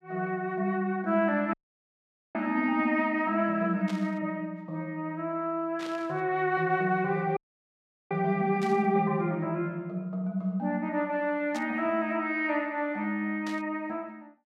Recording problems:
audio cutting out; at 1.5 s for 1 s and at 7.5 s for 0.5 s
burst of static; 5 times, first at 4 s; peak -9 dB vs average level

